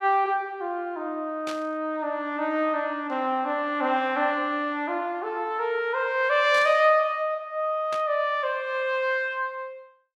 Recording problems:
burst of static; at 1.5 s, at 6.5 s and at 8 s; peak -8 dB vs average level

